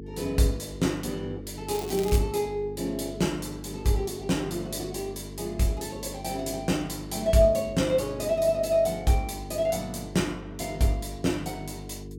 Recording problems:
electrical hum; 50 Hz, harmonics up to 450 Hz, SNR 13 dB
crackling; at 1.5 s; loose cable, SNR 13 dB

